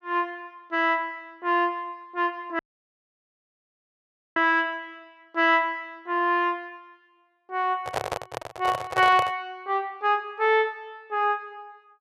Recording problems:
dropout; at 2.5 s for 2 s
microphone handling noise; from 8 to 9.5 s; peak +2 dB vs average level

